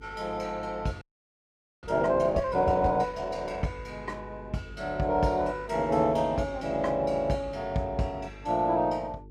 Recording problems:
electrical hum; 50 Hz, harmonics up to 450 Hz, SNR 19 dB
frozen audio; at 1 s for 1 s

